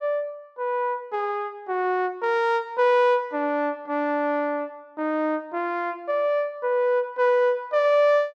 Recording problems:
none

